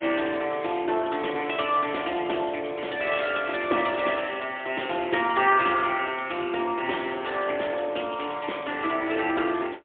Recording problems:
phone line; 280 Hz to 3.4 kHz, AMR-NB, then MP3

